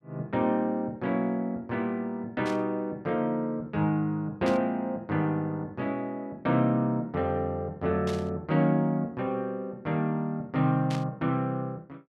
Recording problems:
burst of static; 4 times, first at 2.5 s; peak -6 dB vs average level

